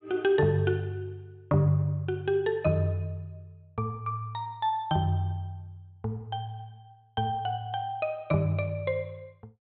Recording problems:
low-pass filter; nothing above 4 kHz

